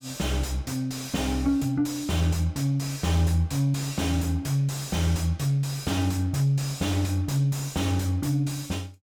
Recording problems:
distorted audio; soft clipping, signal-to-distortion ratio 8 dB

